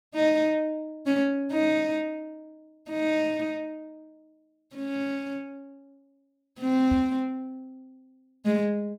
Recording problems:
microphone bump; at 7 s; peak -1 dB vs average level

